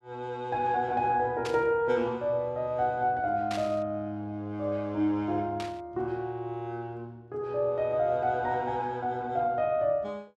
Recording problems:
static burst; at 1.5 s, at 3.5 s and at 5.5 s; peak -4 dB vs average level

